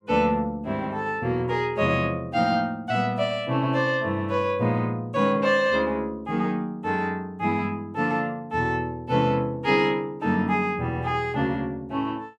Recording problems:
none

